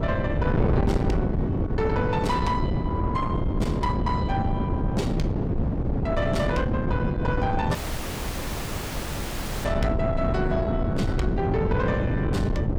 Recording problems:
distortion; soft clipping, signal-to-distortion ratio 12 dB
wind noise; below 290 Hz, SNR -2 dB
audio cutting out; at 8 s for 2 s

